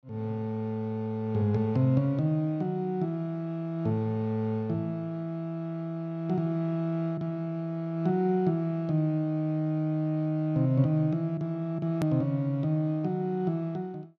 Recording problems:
edit click; at 12 s

